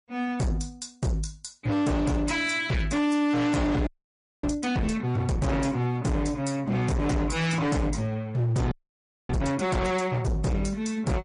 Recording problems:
lossy codec; MP3, log-spectral distance 2 dB, nothing above 10.4 kHz
distorted audio; hard clipping, signal-to-distortion ratio 6 dB
frozen audio; at 4 s for 0.5 s and at 8.5 s for 0.5 s

